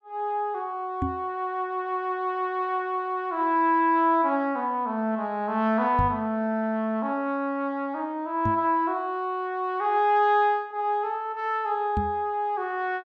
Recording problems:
microphone thump; 4 times, first at 1 s; peak +1 dB vs average level

